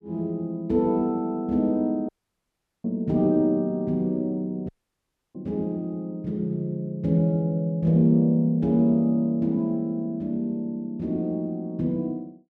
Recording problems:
dropout; at 2 s for 1 s and at 4.5 s for 0.5 s

